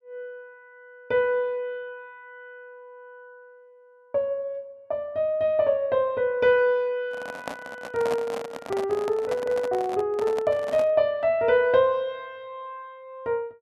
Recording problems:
handling noise; from 7 to 11 s; peak -3 dB vs average level

